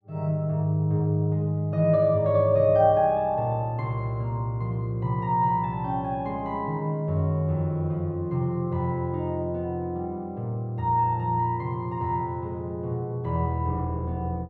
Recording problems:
none

